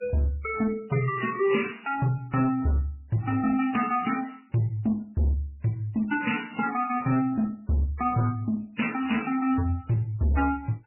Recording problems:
codec artefacts; MP3, then MP3, log-spectral distance 4 dB, nothing above 2.9 kHz
distorted audio; hard clipping, uneven, signal-to-distortion ratio 11 dB

